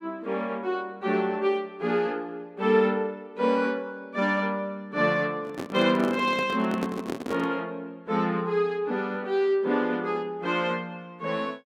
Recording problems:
microphone handling noise; from 5.5 to 7.5 s; peak +1 dB vs average level

